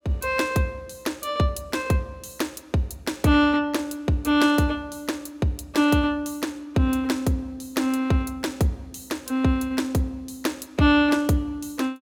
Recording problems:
none

